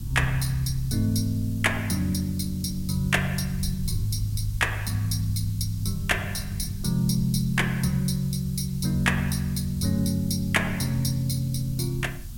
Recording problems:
background hiss; SNR 20 dB
low-frequency rumble; below 110 Hz, SNR 13 dB

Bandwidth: 16.5 kHz